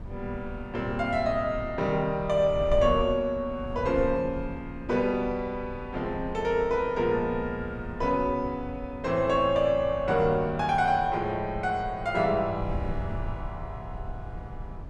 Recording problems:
wind on the microphone; below 100 Hz, SNR 13 dB

